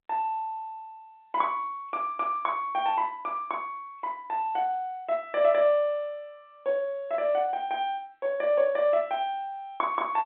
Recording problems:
phone line; 190 Hz to 4 kHz, G.711

